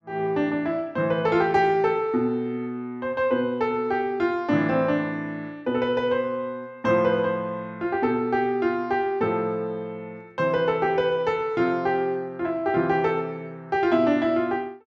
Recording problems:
none

